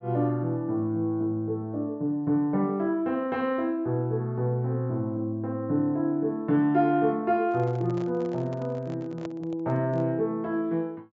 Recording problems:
treble cut off; nothing above 8 kHz
microphone handling noise; from 7.5 to 10 s; peak -9 dB vs average level

